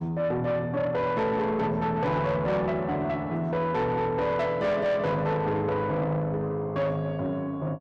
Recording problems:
distorted audio; soft clipping, signal-to-distortion ratio 10 dB

